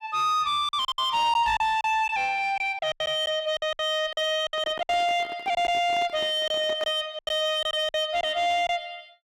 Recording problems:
distorted audio; soft clipping, signal-to-distortion ratio 11 dB
packet loss; 11% of the sound replaced, filled with silence
microphone handling noise; from 4.5 to 7 s; peak -9 dB vs average level

